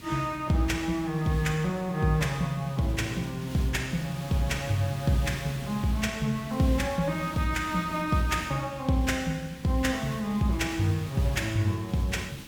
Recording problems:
background hiss; SNR 15 dB

